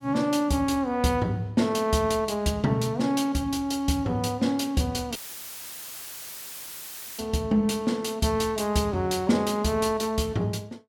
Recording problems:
dropout; at 5 s for 2 s; filled with static

